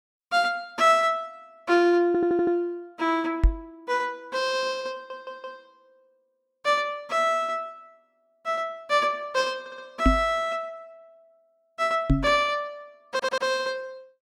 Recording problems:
stutter; 4 times, first at 2 s
microphone bump; at 3.5 s, at 10 s and at 12 s; peak +7 dB vs average level

